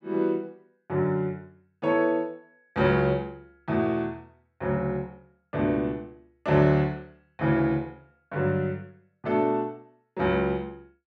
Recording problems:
none

